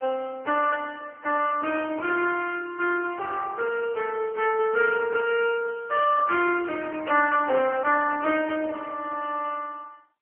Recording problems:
telephone audio; 280 Hz to 2.9 kHz, AMR-NB

